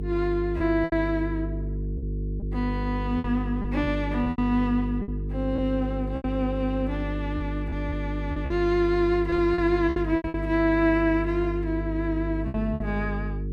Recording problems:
electrical hum; 50 Hz, harmonics up to 450 Hz, SNR 5 dB
packet loss; 8% of the sound replaced, filled with repeated pitch periods

